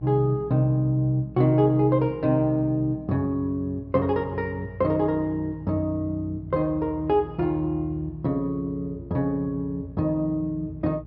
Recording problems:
treble cut off; nothing above 5.5 kHz
hum; 60 Hz, harmonics up to 600 Hz, SNR 19 dB

